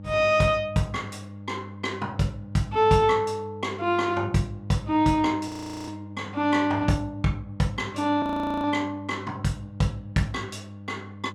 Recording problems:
hum; 50 Hz, harmonics up to 800 Hz, SNR 15 dB
audio freezing; at 5.5 s and at 8 s

